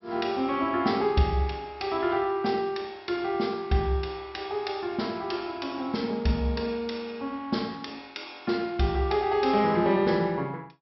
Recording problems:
low-pass filter; nothing above 5.6 kHz

